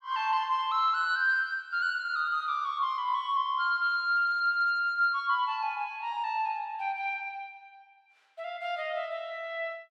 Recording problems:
none

